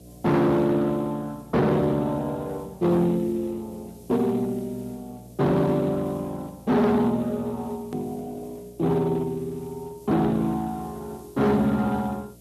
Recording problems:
lossy codec; Speex, log-spectral distance 2 dB
distorted audio; hard clipping, uneven, signal-to-distortion ratio 7 dB
mains hum; 60 Hz, harmonics up to 720 Hz, SNR 24 dB
background hiss; SNR 29 dB
click at an edit; at 8 s

